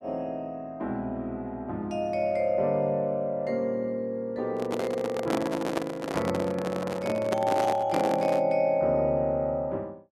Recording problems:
handling noise; from 4.5 to 8.5 s; peak +3 dB vs average level

